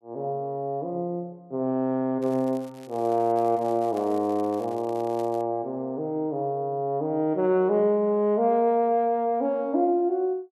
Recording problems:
crackle; from 2 to 5.5 s; loose cable, SNR 27 dB

